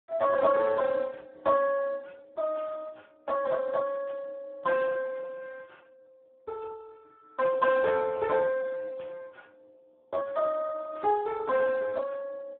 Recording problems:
telephone audio; 130 Hz to 2.6 kHz, Speex
burst of static; 4 times, first at 2.5 s; peak -18 dB vs average level

